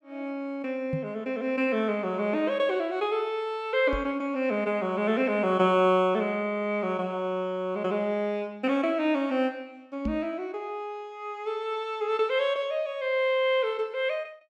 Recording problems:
microphone thump; at 1 s, at 4 s and at 10 s; peak 0 dB vs average level

